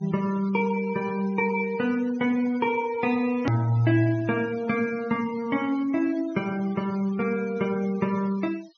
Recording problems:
low-pass filter; nothing above 6.5 kHz
noise reduction artefacts; signal-to-artefact ratio 21 dB
edit click; at 3.5 s

